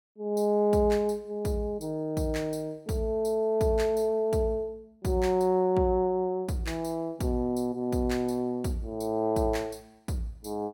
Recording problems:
none

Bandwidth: 17 kHz